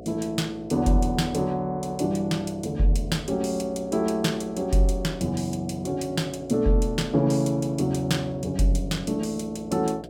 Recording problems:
electrical hum; 60 Hz, harmonics up to 720 Hz, SNR 17 dB

